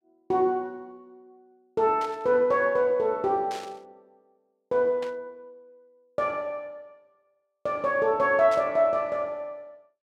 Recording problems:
static burst; 4 times, first at 2 s; peak -12 dB vs average level

